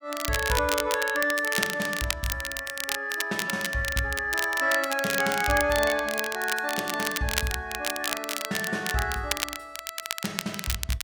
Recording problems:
crackling; vinyl, SNR 4 dB

